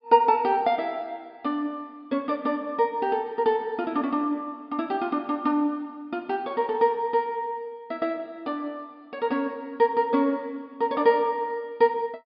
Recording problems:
low-pass filter; nothing above 5.5 kHz

